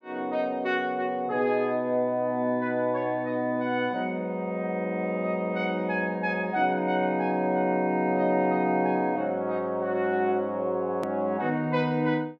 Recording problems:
edit click; at 11 s

